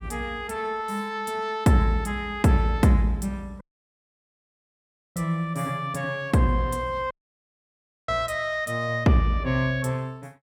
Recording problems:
audio cutting out; at 3.5 s for 1.5 s and at 7 s for 1 s

